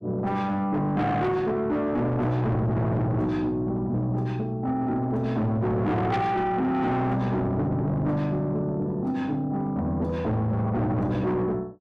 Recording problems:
distortion; soft clipping, signal-to-distortion ratio 8 dB

